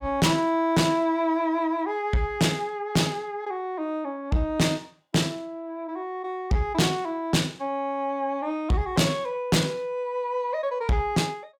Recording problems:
distortion; soft clipping, signal-to-distortion ratio 8 dB

